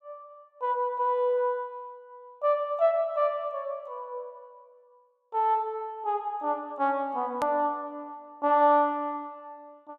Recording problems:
edit click; at 7.5 s

